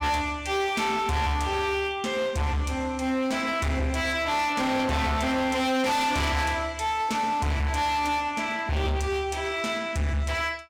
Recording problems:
distortion; hard clipping, uneven, signal-to-distortion ratio 7 dB

